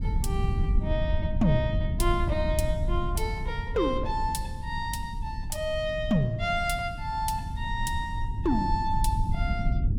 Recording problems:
rumble; below 96 Hz, SNR 2 dB

